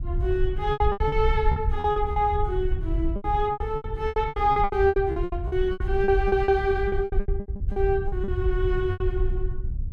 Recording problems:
low-frequency rumble; below 70 Hz, SNR 4 dB
lost packets; 19% of the sound replaced, filled with repeated pitch periods

